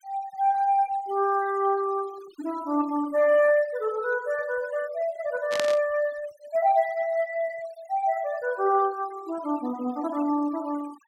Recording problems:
noise reduction artefacts; signal-to-artefact ratio 20 dB
static burst; at 5.5 s; peak +1 dB vs average level

